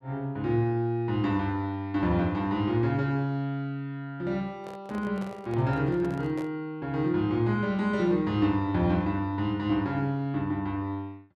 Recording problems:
handling noise; from 4.5 to 6.5 s; peak -9 dB vs average level

